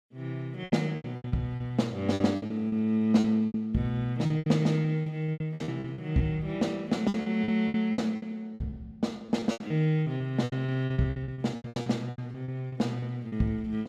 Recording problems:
packet loss; 18% of the sound replaced, filled with repeated pitch periods

